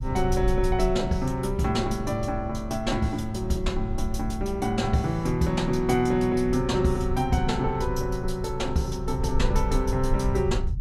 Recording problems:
low-frequency rumble; below 66 Hz, SNR 7 dB

